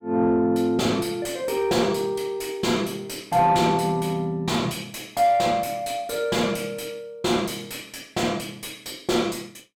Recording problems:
distortion; soft clipping, signal-to-distortion ratio 10 dB

